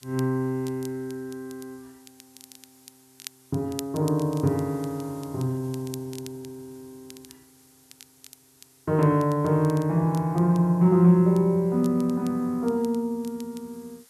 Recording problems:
background hiss; slope +1 dB per octave, SNR 30 dB
crackling; vinyl, SNR 24 dB

